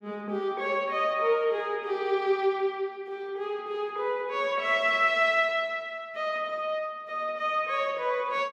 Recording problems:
none

